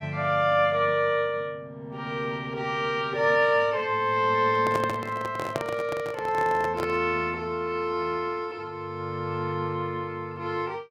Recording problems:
microphone handling noise; from 4.5 to 7 s; peak 0 dB vs average level

